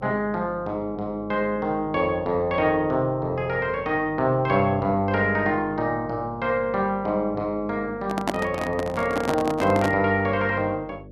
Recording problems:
electrical hum; 50 Hz, harmonics up to 600 Hz, SNR 19 dB
handling noise; from 8 to 10 s; peak +3 dB vs average level

